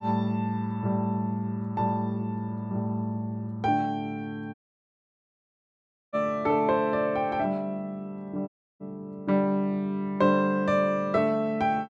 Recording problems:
audio cutting out; at 4.5 s for 1.5 s and at 8.5 s

